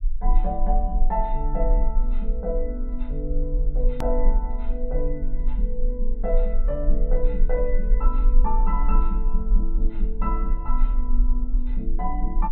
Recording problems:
treble missing; nothing above 4.2 kHz
rumble; below 38 Hz, strongest tone 22 Hz, SNR -5 dB
click at an edit; at 4 s

